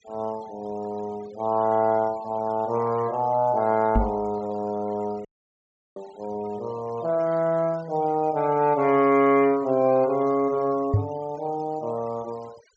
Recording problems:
treble cut off; nothing above 8 kHz
noise reduction artefacts; signal-to-artefact ratio 24 dB
knock on the microphone; at 4 s and at 11 s; peak +6 dB vs average level
audio cutting out; at 5.5 s for 0.5 s

